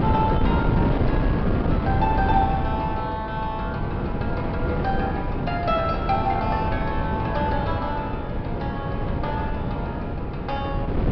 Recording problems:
treble missing; nothing above 5.5 kHz
wind noise; below 310 Hz, SNR -2 dB

